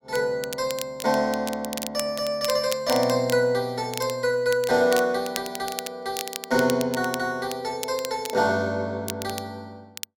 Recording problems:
crackle; vinyl, SNR 11 dB

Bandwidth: 16.5 kHz